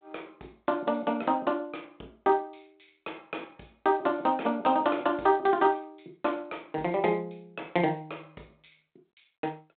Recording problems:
phone line; 260 Hz to 3.7 kHz, G.726

